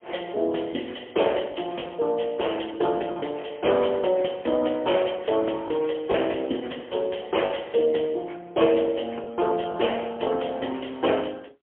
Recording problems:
telephone audio; 280 Hz to 3.3 kHz, AMR-NB, then MP3
packet loss; 3% of the sound replaced, filled with the last packet

